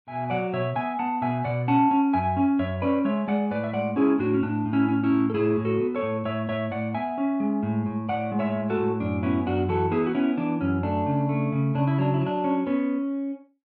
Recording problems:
none

